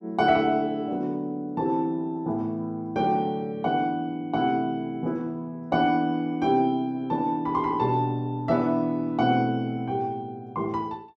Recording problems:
none

